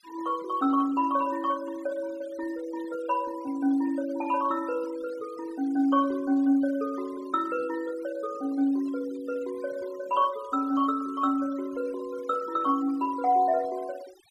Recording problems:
denoising artefacts; signal-to-artefact ratio 22 dB

